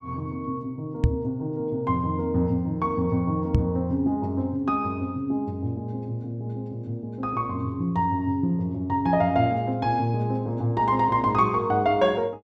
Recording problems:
knock on the microphone; at 1 s and at 3.5 s; peak +8 dB vs average level

